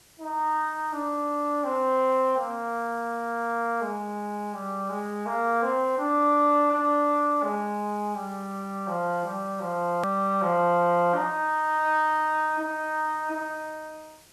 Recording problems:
background hiss; slope -1 dB per octave, SNR 27 dB
hard cut with a click; at 10 s

